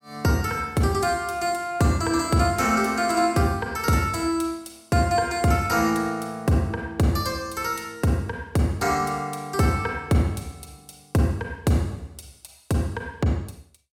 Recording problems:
none

